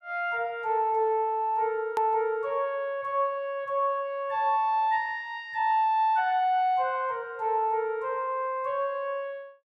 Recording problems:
hard cut with a click; at 2 s

